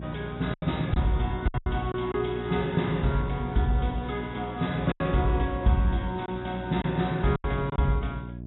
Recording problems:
lossy codec; AAC, log-spectral distance 5 dB, nothing above 3.9 kHz
hum; 60 Hz, harmonics up to 660 Hz, SNR 11 dB
lost packets; 6% of the sound replaced, filled with silence

